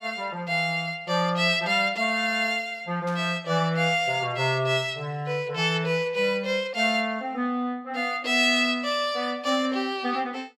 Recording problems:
static burst; at 3 s and at 9.5 s; peak -15 dB vs average level

